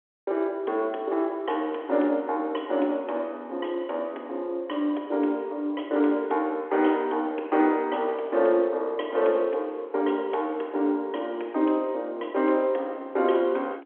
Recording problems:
phone line; 260 Hz to 3.5 kHz, G.711

